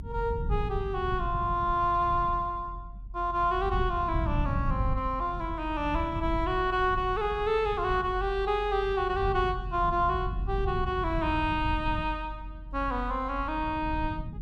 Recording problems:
low-frequency rumble; below 110 Hz, strongest tone 44 Hz, SNR 7 dB

